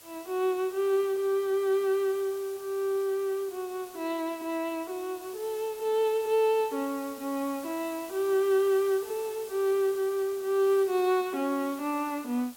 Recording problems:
background hiss; SNR 18 dB

